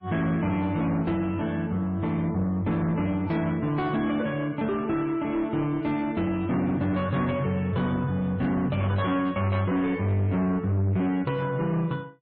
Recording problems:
lossy compression; MP3, log-spectral distance 2 dB
distortion; soft clipping, signal-to-distortion ratio 10 dB

